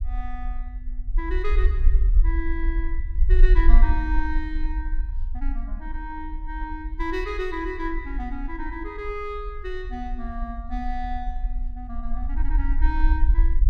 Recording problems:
rumble; below 46 Hz, strongest tone 22 Hz, SNR -7 dB

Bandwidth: 14 kHz